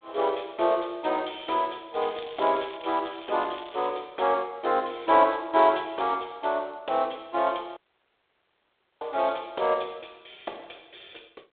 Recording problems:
phone line; 300 Hz to 3.8 kHz, G.726
crackle; from 2 to 4 s; loose cable, SNR 20 dB
audio cutting out; at 8 s for 1 s

